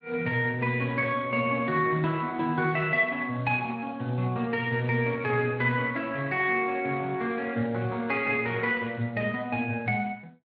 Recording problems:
lossy compression; Speex, then MP3, log-spectral distance 3 dB

